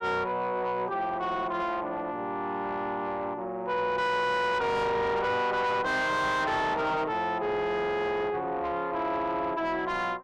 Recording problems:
distorted audio; soft clipping, signal-to-distortion ratio 7 dB

